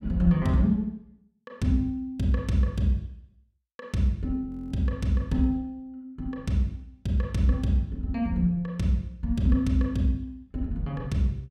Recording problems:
audio freezing; at 4.5 s

